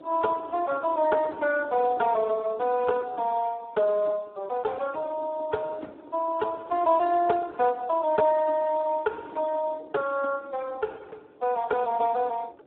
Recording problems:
phone line; 260 Hz to 2.3 kHz, Speex
wind on the microphone; below 550 Hz, SNR 19 dB

